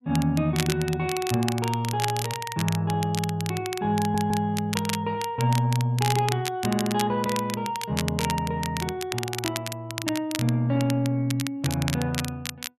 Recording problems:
crackle; vinyl, SNR 8 dB
audio stuttering; at 4 s

